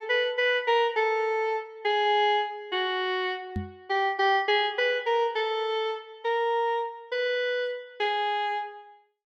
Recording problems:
microphone bump; at 3.5 s; peak -2 dB vs average level

